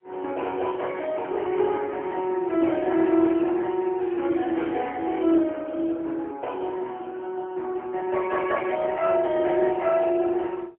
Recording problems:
telephone audio; 260 Hz to 3.3 kHz, AMR-NB, then MP3

